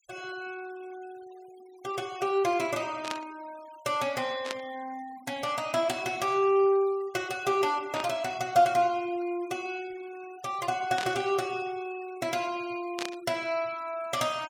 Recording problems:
noise reduction artefacts; signal-to-artefact ratio 22 dB
burst of static; 5 times, first at 3 s; peak -1 dB vs average level

